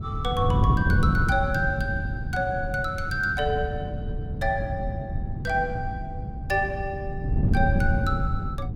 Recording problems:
wind on the microphone; below 160 Hz, SNR 0 dB

